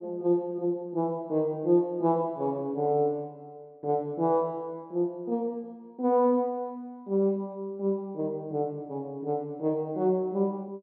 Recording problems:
none

